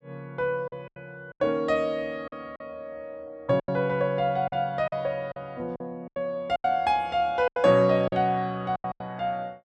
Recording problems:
packet loss; 10% of the sound replaced, filled with silence

